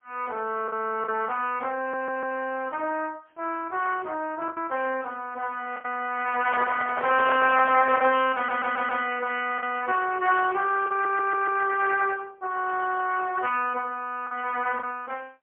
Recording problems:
phone line; 280 Hz to 3.2 kHz, AMR-NB, then MP3
lost packets; 3% of the sound replaced, filled with the last packet
audio stuttering; at 2 s, at 8.5 s and at 11 s
microphone handling noise; from 6.5 to 8 s; peak -2 dB vs average level

